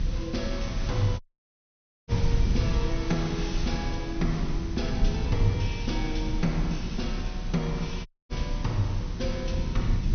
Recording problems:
low-pass filter; nothing above 6.2 kHz
background hiss; slope -1 dB per octave, SNR 12 dB
rumble; below 90 Hz, strongest tone 34 Hz, SNR 1 dB
audio cutting out; at 1 s for 1 s and at 8 s

